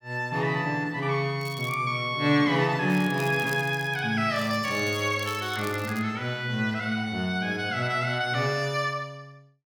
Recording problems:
crackle; at 1.5 s, from 3 to 4 s and from 4.5 to 6 s; loose cable, SNR 19 dB

